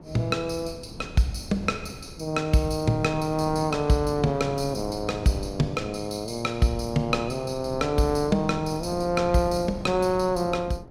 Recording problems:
wind on the microphone; below 360 Hz, SNR 14 dB

